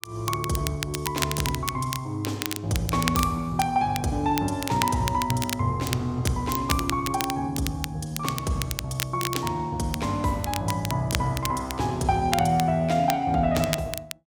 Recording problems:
crackling; vinyl, SNR 7 dB

